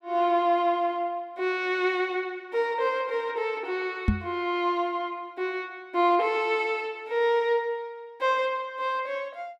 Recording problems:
microphone bump; at 4 s; peak +7 dB vs average level

